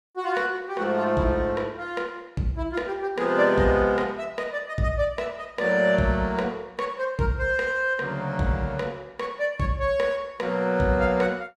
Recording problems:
none

